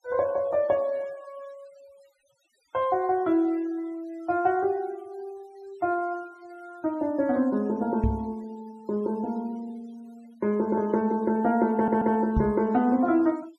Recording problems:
noise reduction artefacts; signal-to-artefact ratio 28 dB
knock on the microphone; at 8 s and at 12 s; peak +4 dB vs average level
audio stuttering; at 12 s

